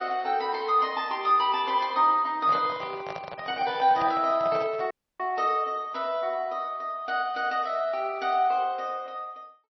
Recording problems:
codec artefacts; MP3, log-spectral distance 2 dB, nothing above 5.7 kHz
microphone handling noise; from 2.5 to 5 s; peak -4 dB vs average level
dropout; at 5 s

